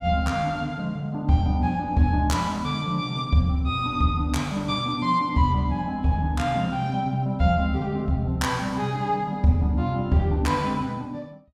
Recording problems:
none

